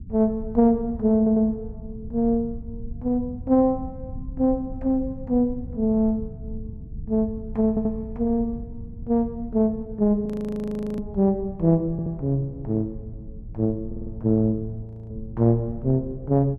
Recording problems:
low-frequency rumble; below 120 Hz, SNR 15 dB
audio stuttering; 4 times, first at 1 s
audio freezing; at 10 s for 0.5 s and at 15 s

